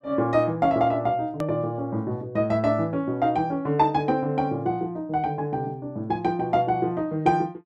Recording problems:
click at an edit; at 1.5 s

